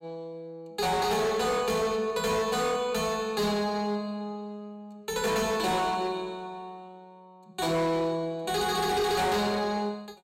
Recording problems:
distorted audio; hard clipping, signal-to-distortion ratio 10 dB

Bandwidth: 16 kHz